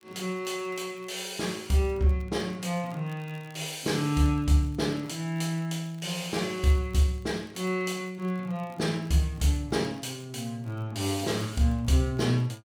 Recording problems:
crackling; vinyl, SNR 30 dB

